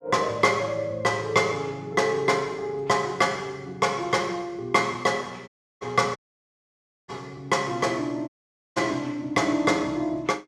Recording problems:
audio cutting out; at 5.5 s, at 6 s for 1 s and at 8.5 s

